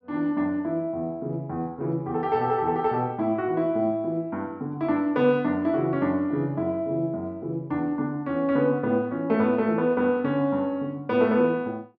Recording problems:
treble missing; nothing above 6.9 kHz

